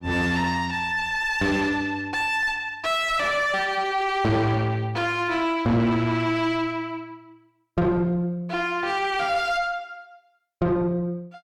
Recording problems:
distortion; soft clipping, signal-to-distortion ratio 7 dB

